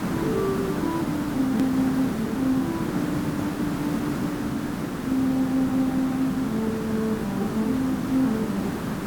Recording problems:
hiss; SNR 2 dB
edit click; at 1.5 s

